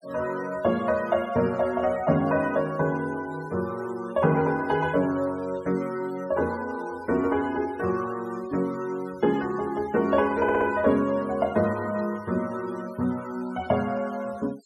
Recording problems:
denoising artefacts; signal-to-artefact ratio 22 dB
stutter; at 10 s

